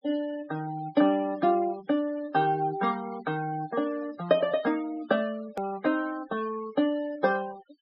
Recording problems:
low-pass filter; nothing above 5.5 kHz
denoising artefacts; signal-to-artefact ratio 19 dB
edit click; at 5.5 s

